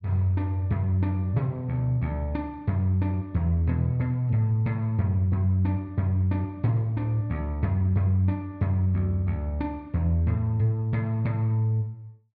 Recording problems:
none

